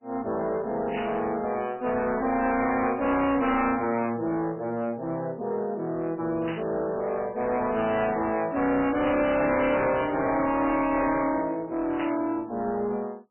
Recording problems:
lossy codec; MP3, log-spectral distance 4 dB, nothing above 2.7 kHz
distortion; soft clipping, signal-to-distortion ratio 6 dB
static burst; 5 times, first at 1 s; peak -4 dB vs average level

